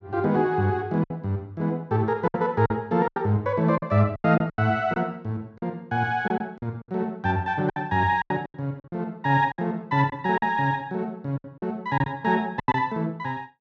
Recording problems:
packet loss; 10% of the sound replaced, filled with silence

